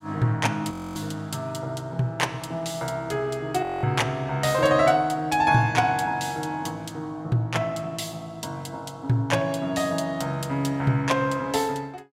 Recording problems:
audio freezing; at 0.5 s and at 3.5 s

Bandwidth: 16 kHz